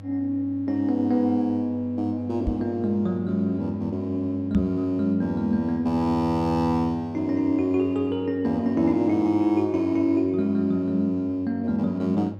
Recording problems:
electrical hum; 50 Hz, harmonics up to 800 Hz, SNR 15 dB
microphone bump; at 2.5 s and at 4.5 s; peak +2 dB vs average level

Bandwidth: 13.5 kHz